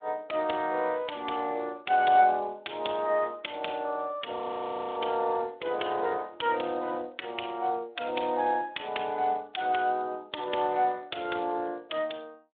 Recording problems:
telephone audio; 300 Hz to 3.6 kHz, Speex
frozen audio; at 4.5 s for 0.5 s

